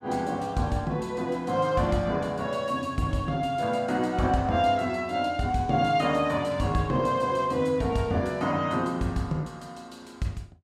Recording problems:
none

